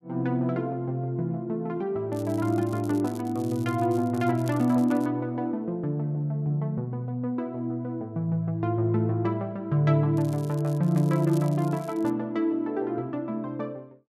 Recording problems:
crackling; from 2 to 5 s and from 10 to 12 s; loose cable, SNR 23 dB

